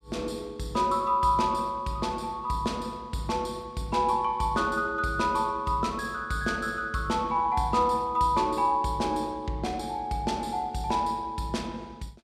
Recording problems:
none

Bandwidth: 14.5 kHz